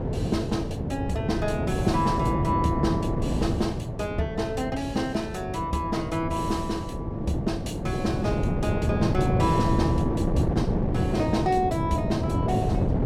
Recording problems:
wind noise; below 330 Hz, SNR 0 dB

